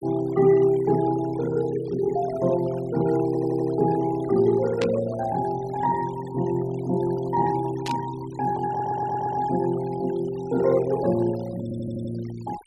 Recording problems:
denoising artefacts; signal-to-artefact ratio 19 dB
stutter; at 3.5 s, at 8.5 s and at 12 s
burst of static; at 5 s and at 8 s; peak -3 dB vs average level

